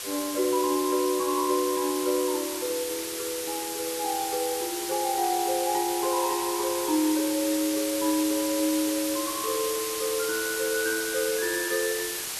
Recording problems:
hiss; slope +1 dB per octave, SNR 3 dB

